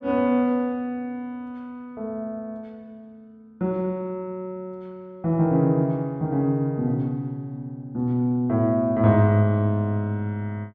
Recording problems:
none

